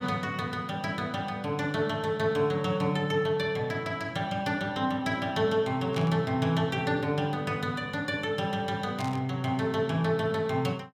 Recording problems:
burst of static; at 6 s and at 9 s; peak -7 dB vs average level

